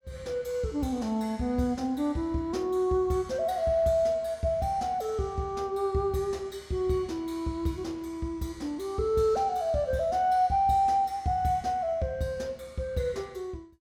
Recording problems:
none

